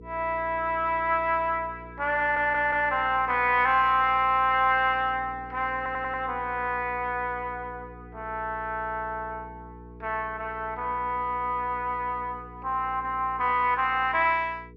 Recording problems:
electrical hum; 60 Hz, harmonics up to 480 Hz, SNR 20 dB
stutter; at 2 s and at 6 s

